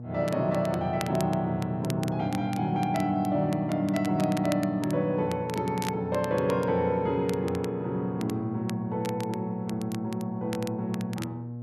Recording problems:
hum; 60 Hz, harmonics up to 600 Hz, SNR 10 dB
crackling; vinyl, SNR 16 dB

